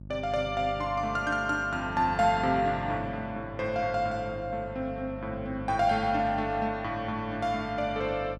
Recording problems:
electrical hum; 50 Hz, harmonics up to 550 Hz, SNR 13 dB

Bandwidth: 12 kHz